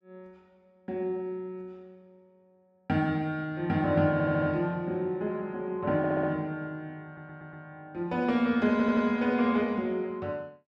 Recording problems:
audio stuttering; 4 times, first at 4 s

